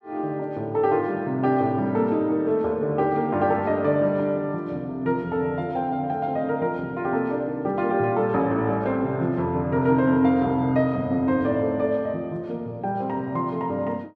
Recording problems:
none

